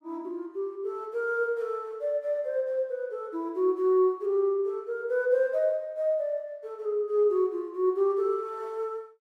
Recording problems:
none

